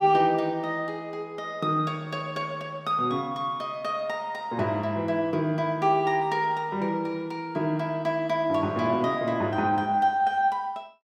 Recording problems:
none

